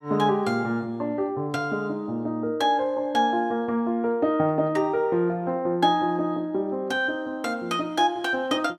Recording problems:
none

